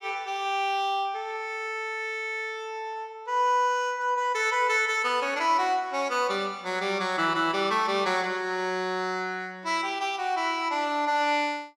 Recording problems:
none

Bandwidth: 16 kHz